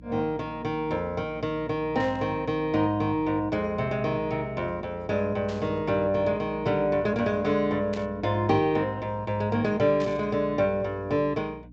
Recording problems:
treble missing; nothing above 8 kHz
hum; 60 Hz, harmonics up to 300 Hz, SNR 20 dB
static burst; 4 times, first at 2 s; peak -10 dB vs average level

